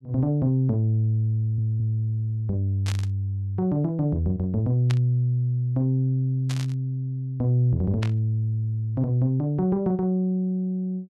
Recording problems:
audio stuttering; at 1.5 s
burst of static; 4 times, first at 3 s; peak -6 dB vs average level

